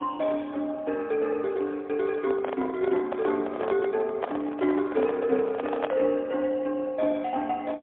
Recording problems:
telephone audio; 240 Hz to 3.9 kHz, AMR-NB, then MP3
microphone handling noise; from 2 to 6 s; peak +3 dB vs average level

